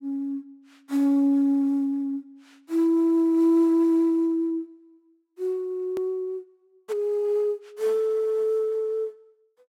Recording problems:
click at an edit; at 6 s

